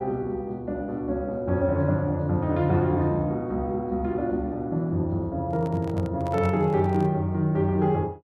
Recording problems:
handling noise; from 5.5 to 7 s; peak -8 dB vs average level

